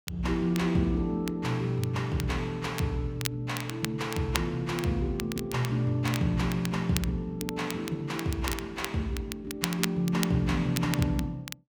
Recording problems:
crackle; vinyl, SNR 10 dB

